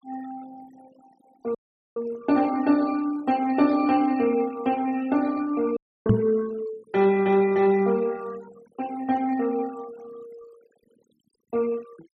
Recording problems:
denoising artefacts; signal-to-artefact ratio 22 dB
audio cutting out; at 1.5 s and at 6 s
knock on the microphone; at 6 s; peak +7 dB vs average level

